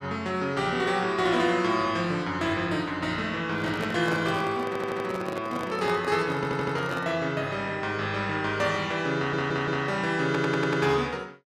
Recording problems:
handling noise; from 3.5 to 7 s; peak -3 dB vs average level
stutter; 4 times, first at 4.5 s

